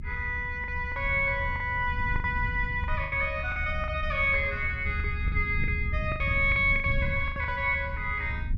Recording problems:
rumble; below 96 Hz, SNR 7 dB
packet loss; 10% of the sound replaced, filled with the last packet

